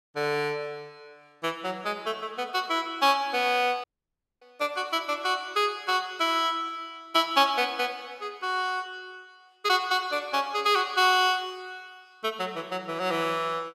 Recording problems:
dropout; at 4 s for 0.5 s

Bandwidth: 16 kHz